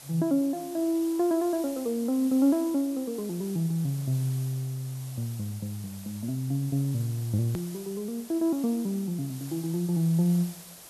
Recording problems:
background hiss; SNR 16 dB
edit click; at 7.5 s

